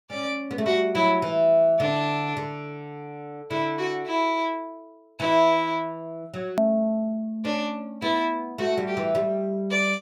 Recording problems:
edit click; at 6.5 s

